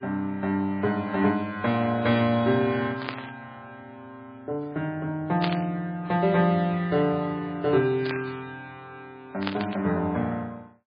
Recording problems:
codec artefacts; MP3, log-spectral distance 2 dB, nothing above 4.8 kHz
static burst; 4 times, first at 3 s; peak 0 dB vs average level

